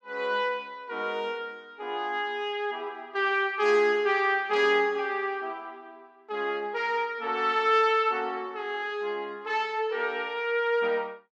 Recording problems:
none

